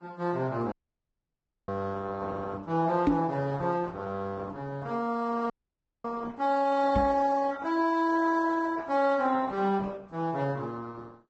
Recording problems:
lossy codec; Opus, then Vorbis, log-spectral distance 3 dB, nothing above 8 kHz
dropout; at 0.5 s for 1 s and at 5.5 s for 0.5 s
microphone bump; at 3 s and at 7 s; peak +8 dB vs average level

